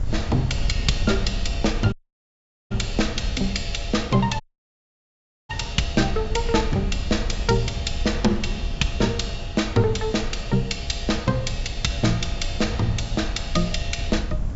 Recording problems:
treble missing; nothing above 8 kHz
background hiss; SNR 26 dB
wind noise; below 80 Hz, SNR 6 dB
dropout; at 2 s for 1 s and at 4.5 s for 1 s

